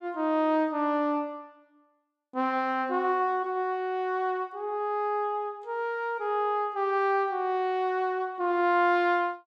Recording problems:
none

